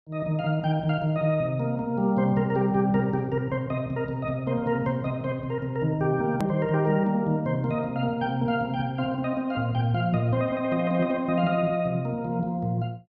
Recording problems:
click at an edit; at 6.5 s

